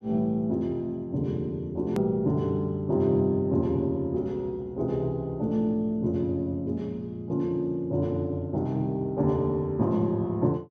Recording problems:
edit click; at 2 s

